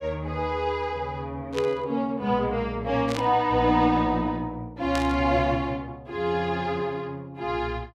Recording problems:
burst of static; at 1.5 s, at 3 s and at 5 s; peak -3 dB vs average level

